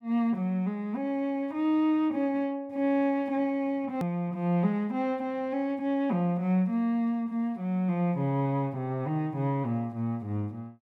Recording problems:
hard cut with a click; at 4 s

